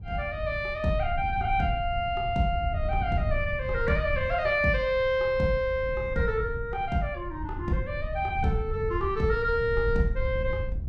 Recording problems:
wind on the microphone; below 94 Hz, SNR 7 dB

